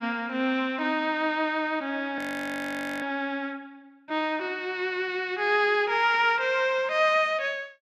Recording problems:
audio freezing; at 2 s for 1 s

